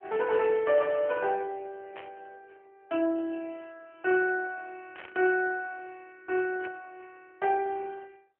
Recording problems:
phone line; 240 Hz to 3 kHz, AMR-NB
static burst; at 2 s, at 5 s and at 6.5 s; peak -11 dB vs average level

